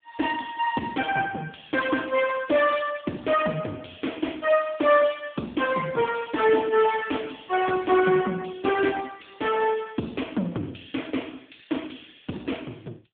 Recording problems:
phone line; 170 Hz to 3.5 kHz, AMR-NB

